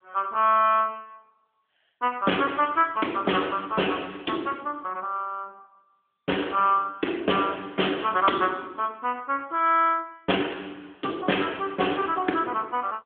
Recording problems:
phone line; 240 Hz to 3.4 kHz, AMR-NB

